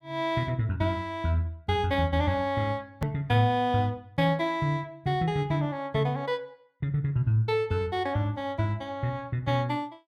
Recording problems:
hard cut with a click; at 3 s

